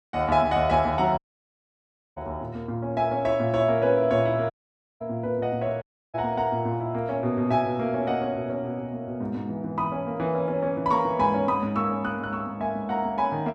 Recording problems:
dropout; at 1 s for 1 s, at 4.5 s for 0.5 s and at 6 s

